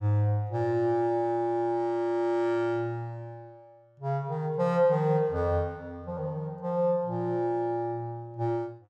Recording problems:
none

